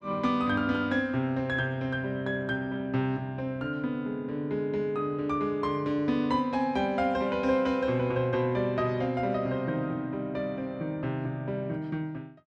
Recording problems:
none

